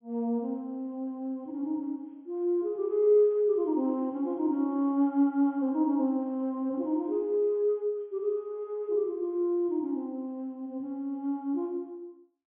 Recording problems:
treble missing; nothing above 3.4 kHz

